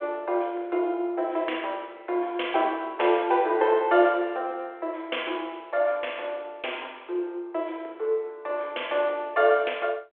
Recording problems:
phone line; 320 Hz to 3.5 kHz, G.726

